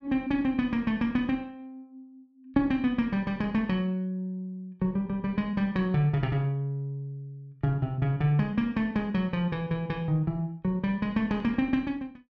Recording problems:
none

